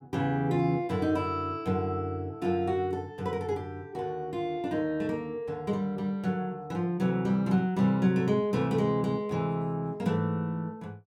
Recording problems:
none

